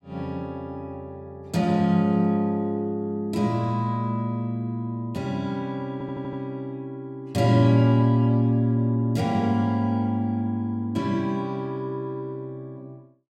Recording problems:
audio stuttering; at 6 s

